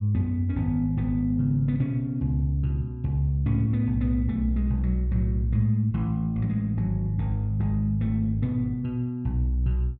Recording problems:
none

